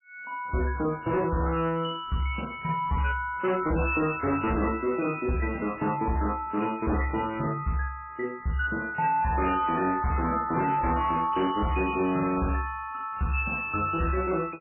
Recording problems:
lossy codec; MP3, log-spectral distance 4 dB, nothing above 2.7 kHz
distortion; hard clipping, signal-to-distortion ratio 11 dB

